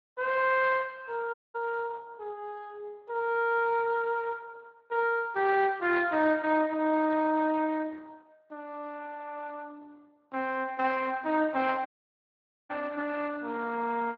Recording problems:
lossy compression; Opus, then Speex, log-spectral distance 3 dB
dropout; at 1.5 s and at 12 s for 1 s

